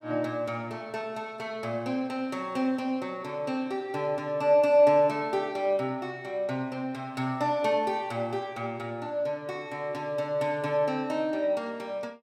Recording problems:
none

